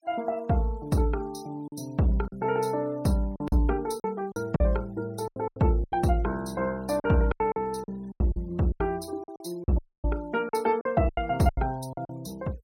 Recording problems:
noise reduction artefacts; signal-to-artefact ratio 27 dB
lost packets; 11% of the sound replaced, filled with silence
dropout; at 10 s

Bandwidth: 16 kHz